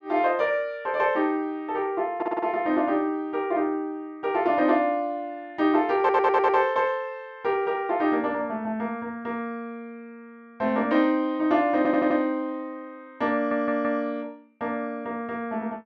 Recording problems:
stutter; 4 times, first at 2 s

